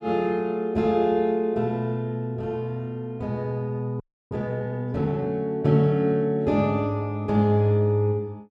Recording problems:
audio freezing; at 4 s

